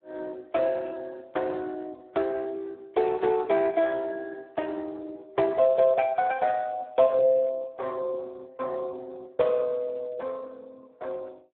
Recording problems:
telephone audio; 340 Hz to 2.6 kHz, Speex

